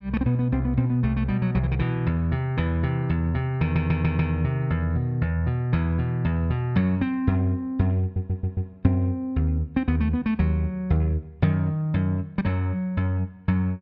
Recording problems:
stutter; at 3.5 s and at 8 s

